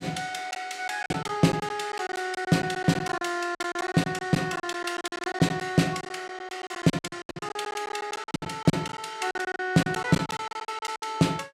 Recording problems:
packet loss; 17% of the sound replaced, filled with silence

